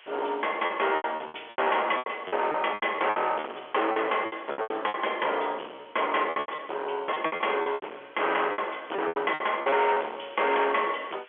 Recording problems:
phone line; 340 Hz to 3.4 kHz, G.711
distorted audio; hard clipping, uneven, signal-to-distortion ratio 7 dB
hiss; SNR 26 dB
lost packets; 15% of the sound replaced, filled with repeated pitch periods

